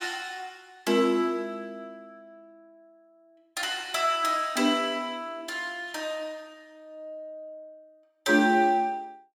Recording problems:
none

